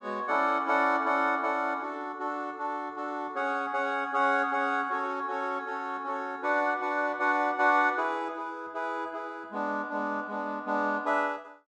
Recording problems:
none

